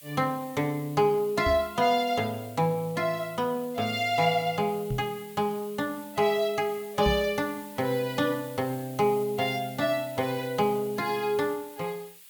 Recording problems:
hiss; SNR 19 dB
microphone bump; at 1.5 s, at 5 s and at 7 s; peak +1 dB vs average level

